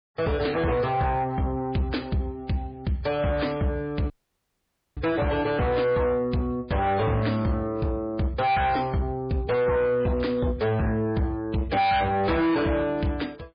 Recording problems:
lossy codec; MP3, log-spectral distance 2 dB, nothing above 4.1 kHz
distorted audio; soft clipping, signal-to-distortion ratio 8 dB
dropout; at 4 s for 1 s

